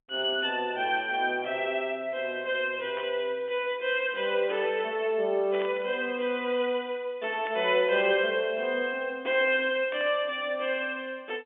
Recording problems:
telephone audio; 190 Hz to 3.4 kHz, G.711
static burst; 4 times, first at 3 s; peak -9 dB vs average level

